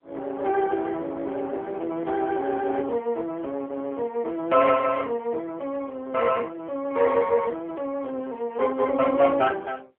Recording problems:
telephone audio; 300 Hz to 3.3 kHz, AMR-NB

